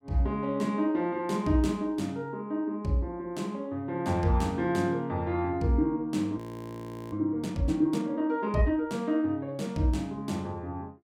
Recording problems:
audio freezing; at 6.5 s for 0.5 s

